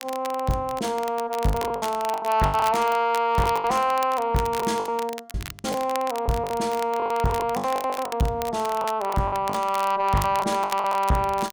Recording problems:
distortion; soft clipping, signal-to-distortion ratio 11 dB
crackle; vinyl, SNR 15 dB
packet loss; 13% of the sound replaced, filled with the last packet

